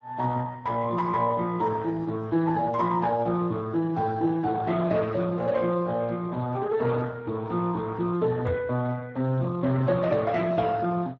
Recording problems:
lossy codec; Speex, log-spectral distance 3 dB
microphone thump; at 8.5 s; peak -1 dB vs average level

